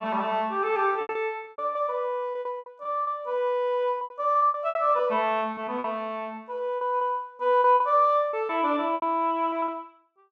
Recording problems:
packet loss; 13% of the sound replaced, filled with repeated pitch periods

